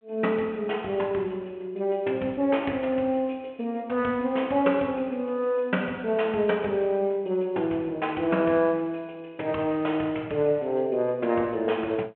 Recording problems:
phone line; 280 Hz to 3.3 kHz, G.726

